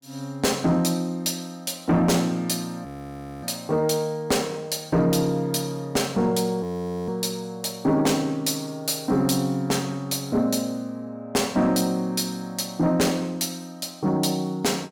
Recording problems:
distortion; soft clipping, signal-to-distortion ratio 11 dB
frozen audio; at 3 s for 0.5 s and at 6.5 s

